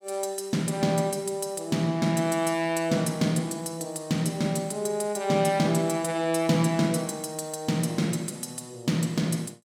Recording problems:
none

